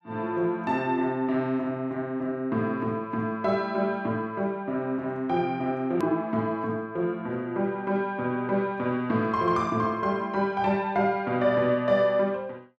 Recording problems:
edit click; at 6 s

